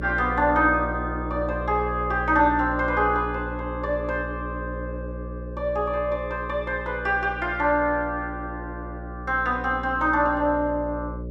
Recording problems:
hum; 60 Hz, harmonics up to 600 Hz, SNR 10 dB

